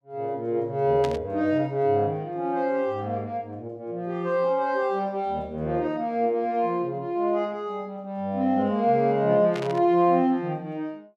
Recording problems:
static burst; at 1 s and at 9.5 s; peak -7 dB vs average level

